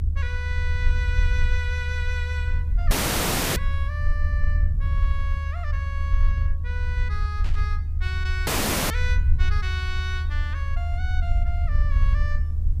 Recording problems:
hiss; SNR 27 dB
low-frequency rumble; below 78 Hz, SNR -9 dB
audio cutting out; at 3 s for 0.5 s and at 8.5 s
static burst; at 7.5 s; peak -3 dB vs average level

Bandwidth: 15 kHz